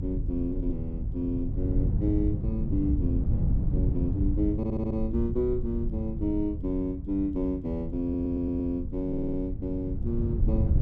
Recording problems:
rumble; below 78 Hz, SNR 8 dB
wind noise; below 120 Hz, SNR 1 dB
audio stuttering; at 4.5 s, at 8 s and at 9 s

